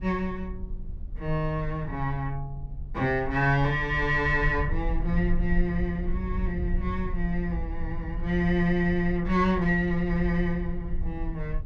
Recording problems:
low-frequency rumble; below 58 Hz, SNR 8 dB

